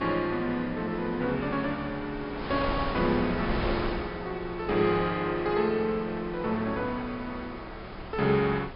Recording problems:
treble cut off; nothing above 5.5 kHz
wind noise; below 1.1 kHz, SNR 9 dB

